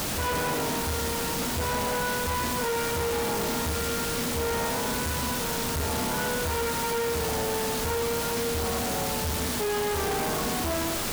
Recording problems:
distorted audio; hard clipping, signal-to-distortion ratio 7 dB
background hiss; slope -3 dB per octave, SNR 0 dB

